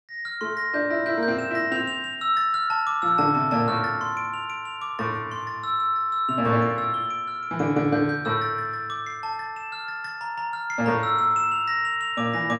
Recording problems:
none

